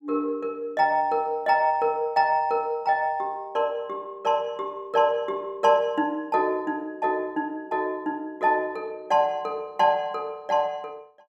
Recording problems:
none

